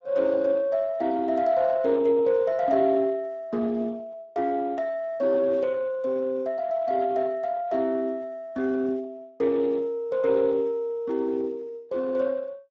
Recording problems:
lossy codec; Speex, log-spectral distance 2 dB

